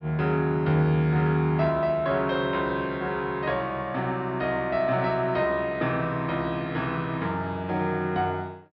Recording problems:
treble cut off; nothing above 5.5 kHz

